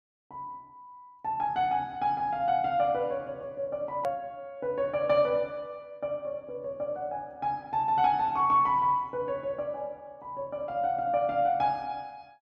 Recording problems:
edit click; at 4 s

